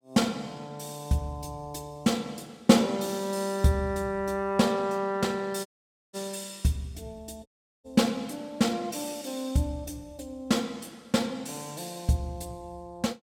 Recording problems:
dropout; at 5.5 s and at 7.5 s

